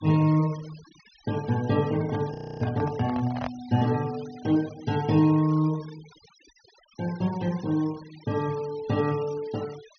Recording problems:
treble cut off; nothing above 6.3 kHz
denoising artefacts; signal-to-artefact ratio 20 dB
handling noise; from 2 to 3.5 s; peak -4 dB vs average level
frozen audio; at 2.5 s

